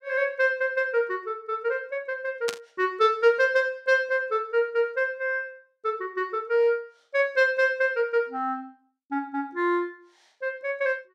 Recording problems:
static burst; at 2.5 s; peak -1 dB vs average level

